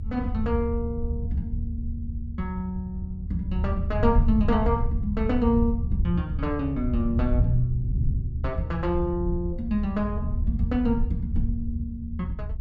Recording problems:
low-frequency rumble; below 90 Hz, SNR 1 dB

